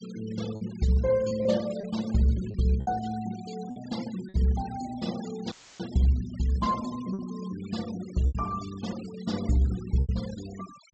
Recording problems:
treble cut off; nothing above 8 kHz
noise reduction artefacts; signal-to-artefact ratio 16 dB
packet loss; 5% of the sound replaced, filled with repeated pitch periods
dropout; at 5.5 s; filled with static

